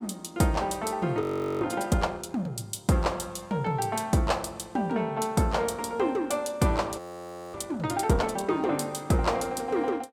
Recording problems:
audio freezing; at 1 s and at 7 s for 0.5 s

